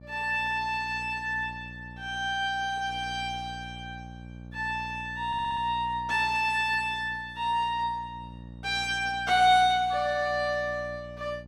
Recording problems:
electrical hum; 60 Hz, harmonics up to 840 Hz, SNR 18 dB
audio stuttering; at 5.5 s

